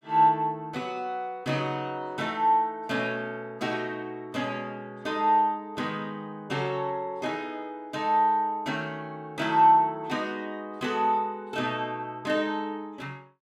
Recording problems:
none

